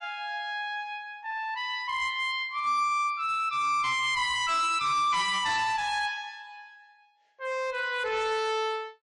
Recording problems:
lossy compression; MP3, log-spectral distance 2 dB, nothing above 10.4 kHz
distorted audio; hard clipping, signal-to-distortion ratio 10 dB

